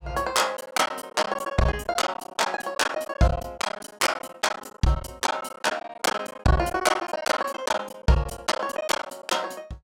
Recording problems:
packet loss; 16% of the sound replaced, filled with silence

